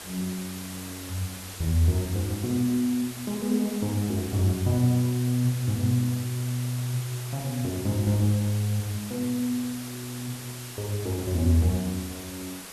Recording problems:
background hiss; slope -1 dB per octave, SNR 12 dB

